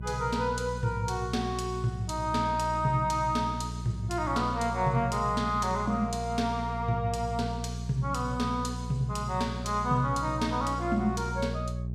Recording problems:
hum; 60 Hz, harmonics up to 420 Hz, SNR 7 dB

